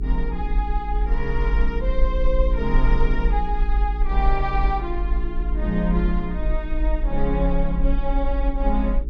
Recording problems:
hum; 60 Hz, harmonics up to 420 Hz, SNR 8 dB
rumble; below 46 Hz, SNR -2 dB

